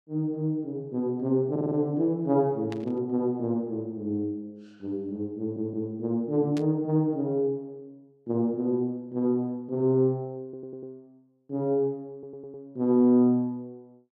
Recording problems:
audio stuttering; 4 times, first at 1.5 s
static burst; at 2.5 s and at 6.5 s; peak -11 dB vs average level

